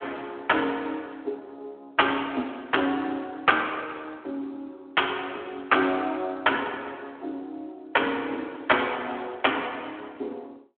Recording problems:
telephone audio; 240 Hz to 3.4 kHz, Speex

